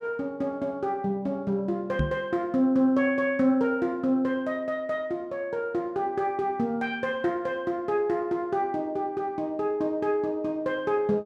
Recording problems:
microphone bump; at 2 s; peak +4 dB vs average level

